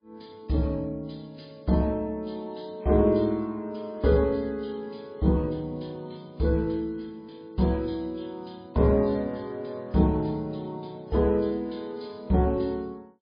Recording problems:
lossy compression; MP3, log-spectral distance 4 dB, nothing above 11 kHz

